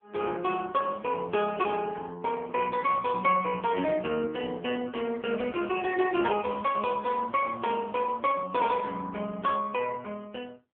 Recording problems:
telephone audio; 220 Hz to 3.3 kHz, AMR-NB

